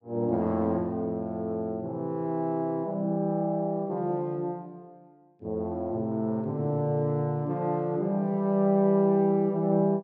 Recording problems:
none

